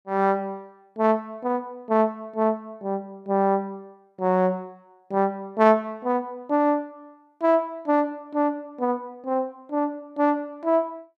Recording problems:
none

